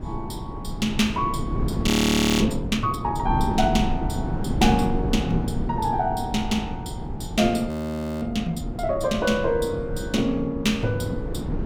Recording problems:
wind noise; below 250 Hz, SNR 6 dB
frozen audio; at 2 s for 0.5 s and at 7.5 s for 0.5 s

